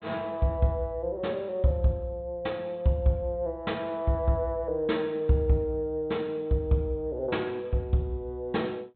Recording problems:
treble cut off; nothing above 4 kHz

